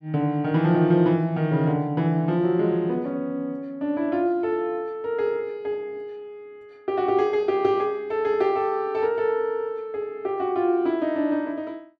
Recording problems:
none

